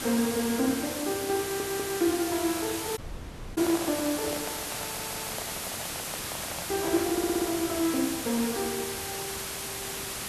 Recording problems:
hiss; slope -1 dB per octave, SNR 3 dB
audio stuttering; at 1.5 s, at 5 s and at 7 s
dropout; at 3 s for 0.5 s
handling noise; from 3 to 7.5 s; peak -3 dB vs average level

